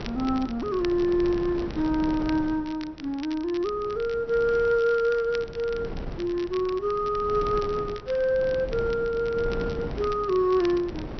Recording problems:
treble cut off; nothing above 5.9 kHz
wind on the microphone; below 390 Hz, SNR 12 dB
crackle; vinyl, SNR 20 dB

